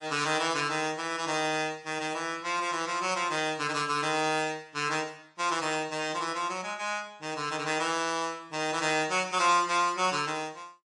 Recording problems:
codec artefacts; MP3, then MP3, log-spectral distance 3 dB

